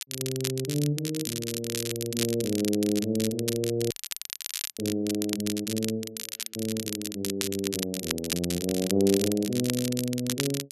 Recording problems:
crackle; vinyl, SNR 4 dB
audio cutting out; at 4 s for 1 s

